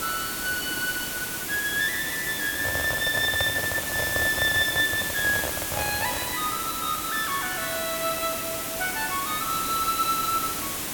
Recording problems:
background hiss; slope -2 dB per octave, SNR 2 dB
handling noise; from 2.5 to 6.5 s; peak +1 dB vs average level

